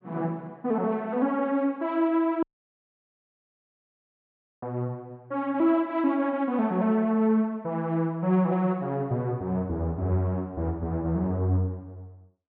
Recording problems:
audio cutting out; at 2.5 s for 2 s

